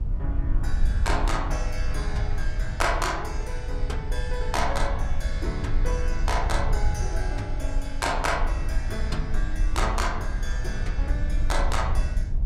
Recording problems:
rumble; below 60 Hz, SNR -1 dB

